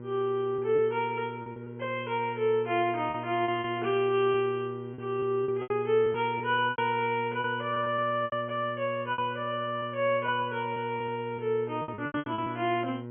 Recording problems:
treble missing; nothing above 3.2 kHz
hum; 60 Hz, harmonics up to 1.4 kHz, SNR 12 dB
packet loss; 10% of the sound replaced, filled with repeated pitch periods

